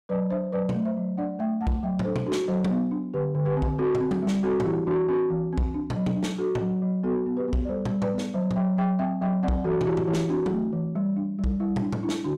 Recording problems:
distorted audio; soft clipping, signal-to-distortion ratio 12 dB

